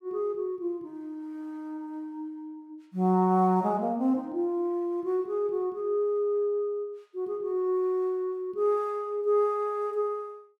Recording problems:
none

